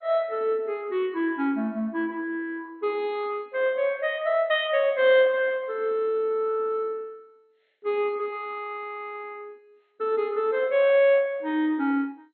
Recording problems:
lossy codec; MP2, log-spectral distance 2 dB

